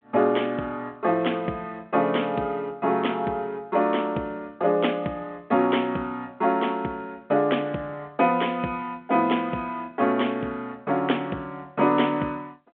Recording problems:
phone line; 220 Hz to 3.4 kHz, G.726

